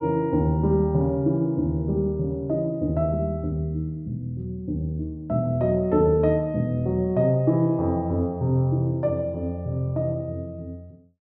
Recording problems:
treble cut off; nothing above 5.5 kHz

